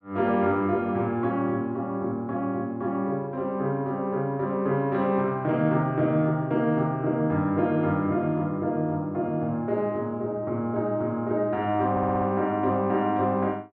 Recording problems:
stutter; at 12 s

